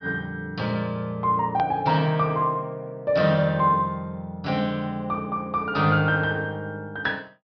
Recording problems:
treble missing; nothing above 5.5 kHz
hard cut with a click; at 1.5 s

